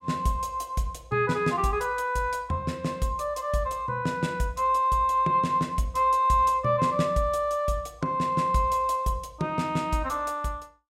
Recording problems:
none

